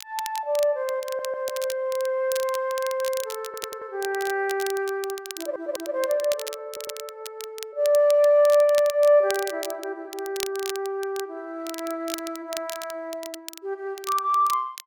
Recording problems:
crackling; vinyl, SNR 13 dB
audio stuttering; 4 times, first at 1 s

